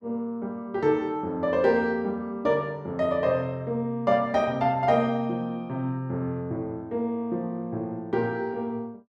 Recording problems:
none

